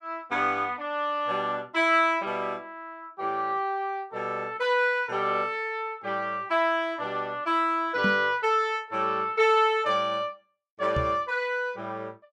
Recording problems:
microphone thump; at 8 s and at 11 s; peak +1 dB vs average level

